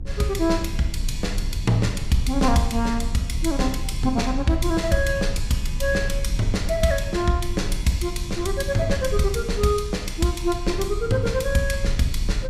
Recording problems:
rumble; below 72 Hz, SNR 6 dB

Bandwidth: 15.5 kHz